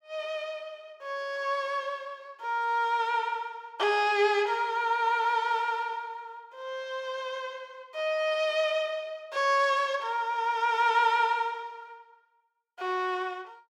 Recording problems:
none

